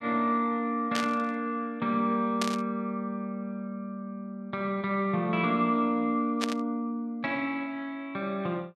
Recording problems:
burst of static; at 1 s, at 2.5 s and at 6.5 s; peak +3 dB vs average level

